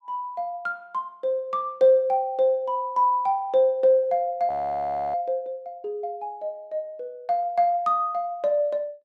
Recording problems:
frozen audio; at 4.5 s for 0.5 s

